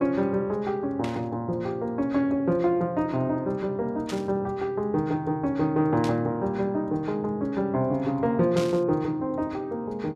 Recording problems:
static burst; 4 times, first at 1 s; peak -5 dB vs average level

